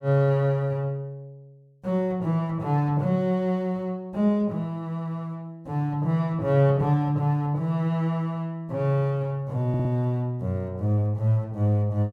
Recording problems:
stutter; at 9.5 s

